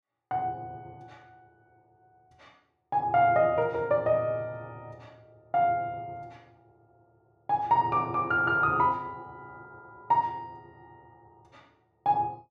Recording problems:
none

